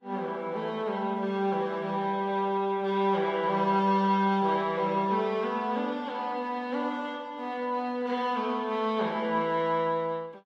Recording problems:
codec artefacts; Vorbis, log-spectral distance 2 dB, nothing above 12.7 kHz

